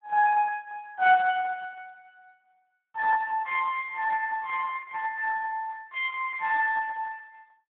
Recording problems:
telephone audio; 900 Hz to 2.1 kHz, Speex

